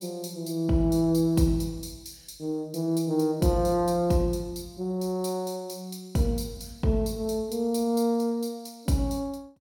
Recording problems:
none

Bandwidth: 17.5 kHz